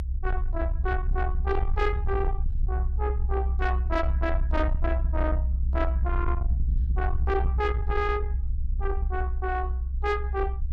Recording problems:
distorted audio; soft clipping, signal-to-distortion ratio 11 dB
rumble; below 64 Hz, SNR -2 dB

